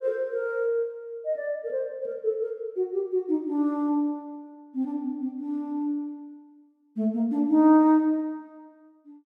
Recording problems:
none

